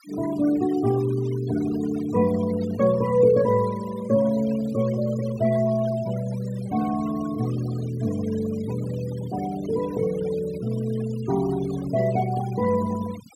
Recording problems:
denoising artefacts; signal-to-artefact ratio 16 dB

